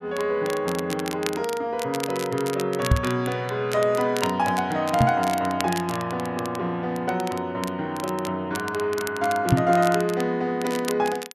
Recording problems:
crackle; vinyl, SNR 12 dB
microphone bump; at 3 s, at 5 s and at 9.5 s; peak +9 dB vs average level

